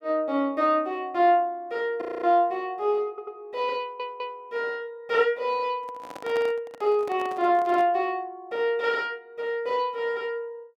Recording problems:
audio freezing; at 2 s
stutter; at 3 s and at 4 s
microphone handling noise; from 6 to 8 s; peak -8 dB vs average level

